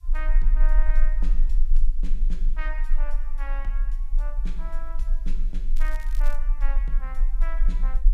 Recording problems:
hiss; slope +3 dB per octave, SNR 29 dB
rumble; below 32 Hz, strongest tone 22 Hz, SNR -14 dB
crackle; at 6 s; loose cable, SNR 11 dB

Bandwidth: 15 kHz